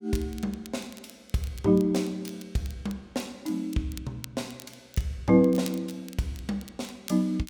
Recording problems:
crackling; vinyl, SNR 19 dB

